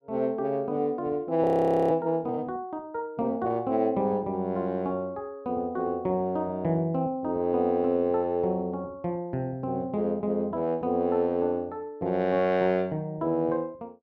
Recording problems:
frozen audio; at 1.5 s

